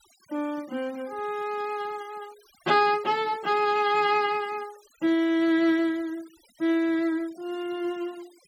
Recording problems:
noise reduction artefacts; signal-to-artefact ratio 25 dB

